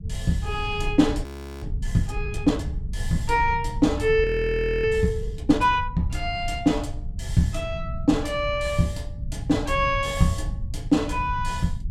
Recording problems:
rumble; below 100 Hz, SNR 8 dB
audio freezing; at 1 s and at 4 s for 0.5 s

